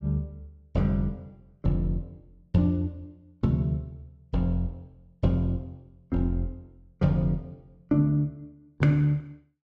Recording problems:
none

